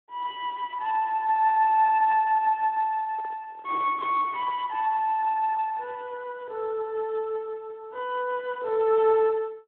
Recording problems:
telephone audio; 280 Hz to 3.2 kHz, Speex
microphone handling noise; from 3 to 5 s; peak -17 dB vs average level

